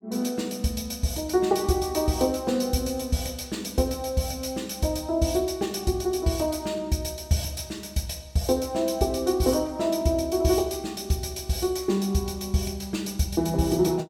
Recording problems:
none

